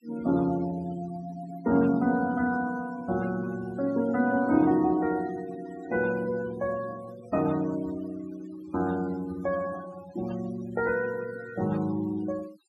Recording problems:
noise reduction artefacts; signal-to-artefact ratio 19 dB

